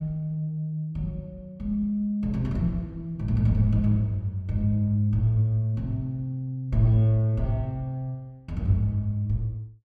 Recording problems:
none

